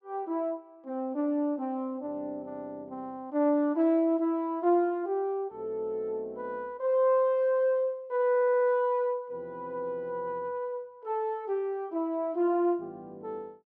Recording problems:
stutter; at 8.5 s

